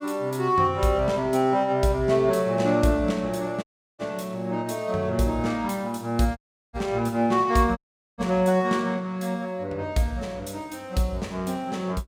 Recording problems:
audio cutting out; at 3.5 s, at 6.5 s and at 8 s

